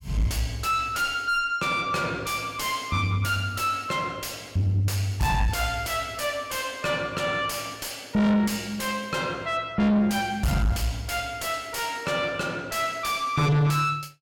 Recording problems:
distortion; soft clipping, signal-to-distortion ratio 5 dB

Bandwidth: 17 kHz